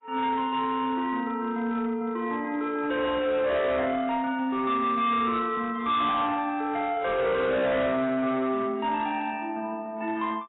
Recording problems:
lossy compression; AAC, log-spectral distance 2 dB, nothing above 3.7 kHz
distorted audio; hard clipping, signal-to-distortion ratio 10 dB

